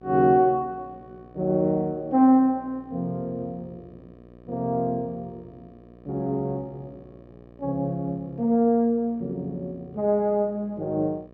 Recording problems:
electrical hum; 60 Hz, harmonics up to 1.3 kHz, SNR 25 dB

